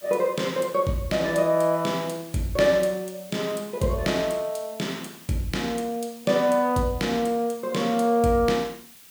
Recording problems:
hiss; SNR 21 dB

